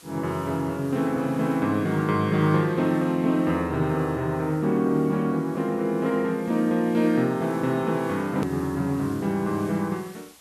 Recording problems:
background hiss; slope -1 dB per octave, SNR 25 dB
hard cut with a click; at 8.5 s

